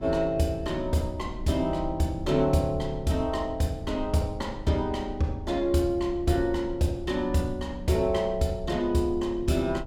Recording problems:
low-frequency rumble; below 110 Hz, SNR 13 dB

